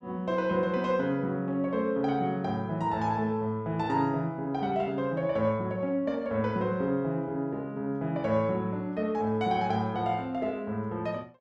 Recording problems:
none

